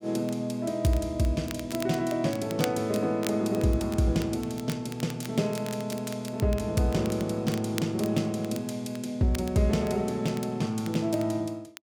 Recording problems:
crackle; vinyl, SNR 16 dB

